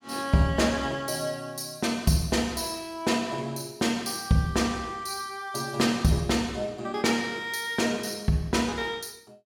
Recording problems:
none

